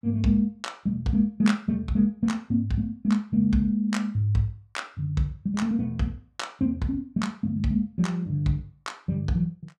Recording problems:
none

